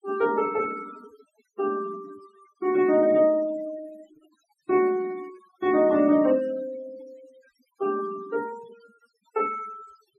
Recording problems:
noise reduction artefacts; signal-to-artefact ratio 21 dB

